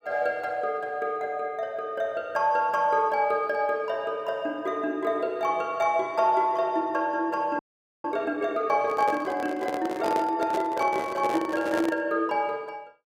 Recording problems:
frozen audio; at 7.5 s
microphone handling noise; from 9 to 12 s; peak 0 dB vs average level

